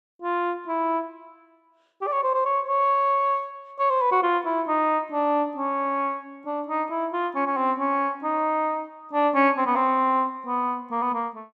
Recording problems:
none

